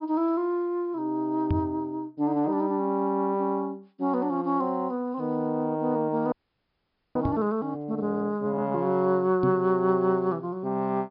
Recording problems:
treble cut off; nothing above 5.5 kHz
microphone bump; at 1.5 s, at 7.5 s and at 9.5 s; peak +3 dB vs average level
audio freezing; at 6.5 s for 1 s

